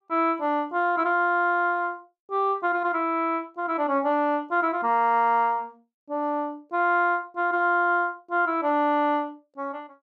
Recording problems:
none

